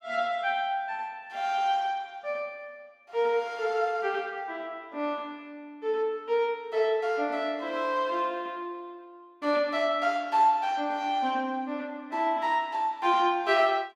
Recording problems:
none

